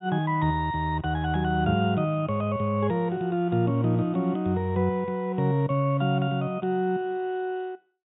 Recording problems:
treble missing; nothing above 4 kHz

